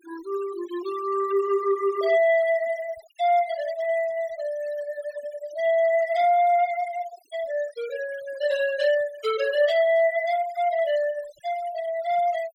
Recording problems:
noise reduction artefacts; signal-to-artefact ratio 18 dB

